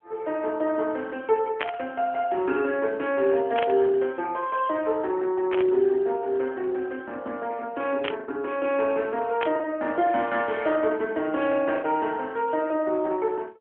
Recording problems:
phone line; 280 Hz to 3.4 kHz, AMR-NB
packet loss; 1.5% of the sound replaced, filled with the last packet
burst of static; 5 times, first at 1.5 s; peak 0 dB vs average level

